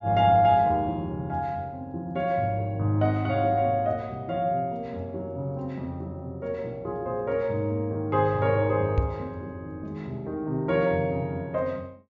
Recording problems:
treble missing; nothing above 7.2 kHz
microphone thump; at 9 s; peak +6 dB vs average level

